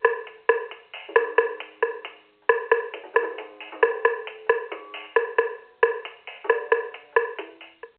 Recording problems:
phone line; 340 Hz to 3.1 kHz, G.711

